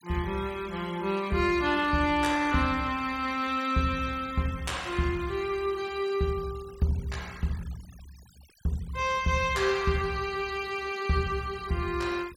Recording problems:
noise reduction artefacts; signal-to-artefact ratio 20 dB

